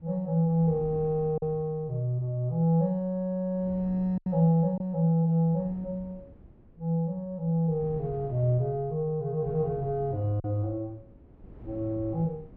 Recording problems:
wind noise; below 270 Hz, SNR 21 dB
packet loss; 1.6% of the sound replaced, filled with silence

